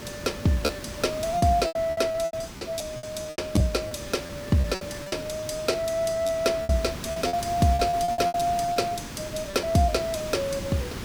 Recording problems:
background hiss; slope -4 dB per octave, SNR 11 dB
lost packets; 12% of the sound replaced, filled with repeated pitch periods

